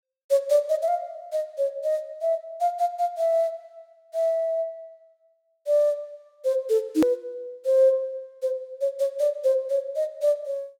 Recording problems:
hard cut with a click; at 7 s

